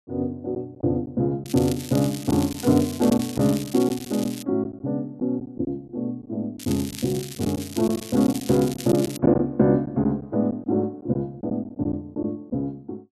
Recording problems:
packet loss; 5% of the sound replaced, filled with silence
crackling; from 1.5 to 4.5 s and from 6.5 to 9 s; loose cable, SNR 13 dB

